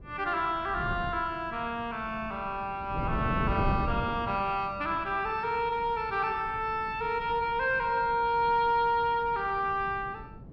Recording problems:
wind on the microphone; below 240 Hz, SNR 11 dB

